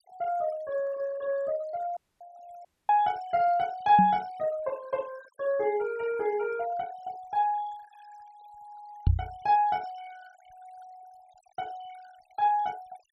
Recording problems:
denoising artefacts; signal-to-artefact ratio 23 dB
audio cutting out; at 2 s and at 2.5 s
microphone thump; at 4 s and at 9 s; peak +8 dB vs average level

